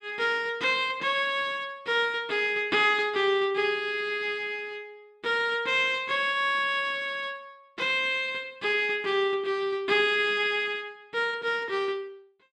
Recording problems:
none

